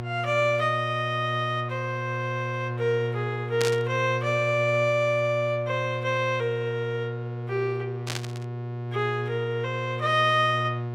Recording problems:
electrical hum; 60 Hz, harmonics up to 1.1 kHz, SNR 7 dB
burst of static; at 3.5 s and at 8 s; peak 0 dB vs average level

